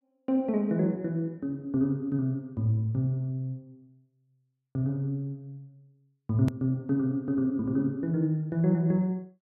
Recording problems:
edit click; at 6.5 s

